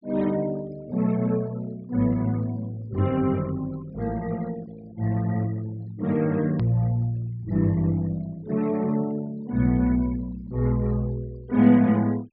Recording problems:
treble cut off; nothing above 5.5 kHz
noise reduction artefacts; signal-to-artefact ratio 25 dB
hard cut with a click; at 6.5 s

